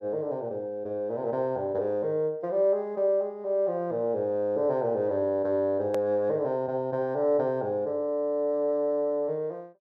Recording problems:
hard cut with a click; at 6 s

